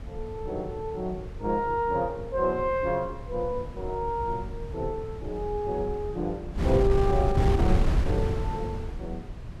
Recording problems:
wind on the microphone; below 130 Hz, SNR 3 dB

